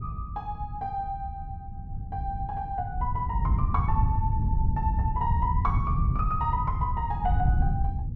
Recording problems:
wind on the microphone; below 110 Hz, SNR -3 dB

